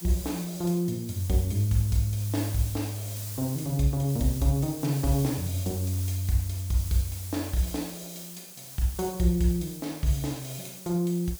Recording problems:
background hiss; SNR 12 dB

